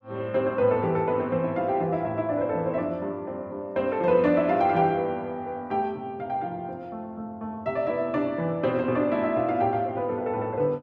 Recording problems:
none

